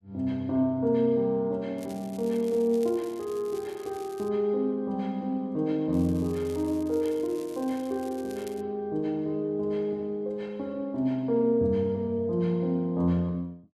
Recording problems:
crackling; from 2 to 4.5 s and from 6 to 8.5 s; loose cable, SNR 23 dB

